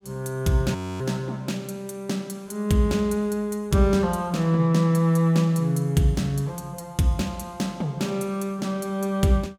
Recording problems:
frozen audio; at 1 s

